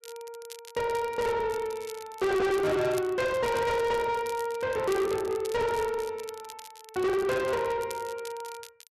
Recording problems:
distortion; soft clipping, signal-to-distortion ratio 6 dB
crackling; vinyl, SNR 18 dB

